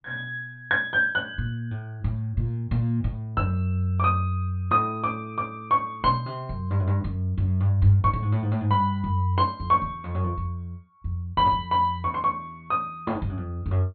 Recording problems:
treble cut off; nothing above 4.4 kHz

